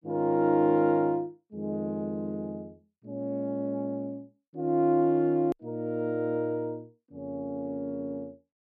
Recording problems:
hard cut with a click; at 5.5 s

